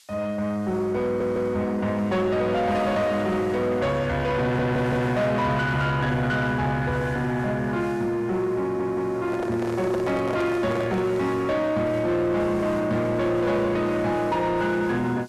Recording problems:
distorted audio; soft clipping, signal-to-distortion ratio 10 dB
background hiss; slope +5 dB per octave, SNR 29 dB
audio stuttering; at 1 s, at 4.5 s and at 8.5 s
microphone handling noise; from 9.5 to 11 s; peak -1 dB vs average level

